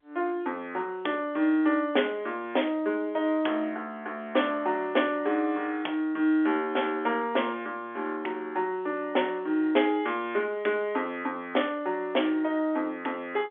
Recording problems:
telephone audio; 260 Hz to 3.5 kHz, G.711

